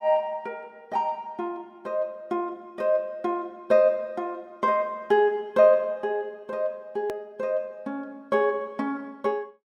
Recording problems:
edit click; at 7 s

